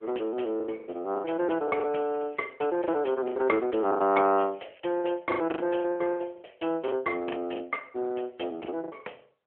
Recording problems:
phone line; 300 Hz to 3.1 kHz, AMR-NB
packet loss; 14% of the sound replaced, filled with the last packet
crackle; at 2 s and at 4.5 s; loose cable, SNR 29 dB

